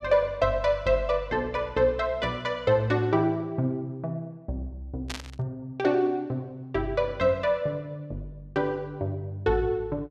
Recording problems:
burst of static; at 5 s; peak -3 dB vs average level

